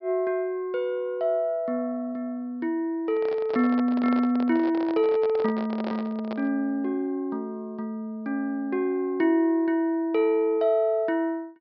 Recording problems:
treble missing; nothing above 5.5 kHz
handling noise; from 3 to 6.5 s; peak -4 dB vs average level

